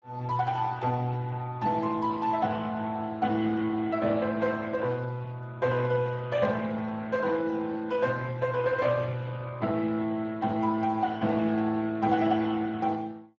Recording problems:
lossy compression; Speex, log-spectral distance 3 dB

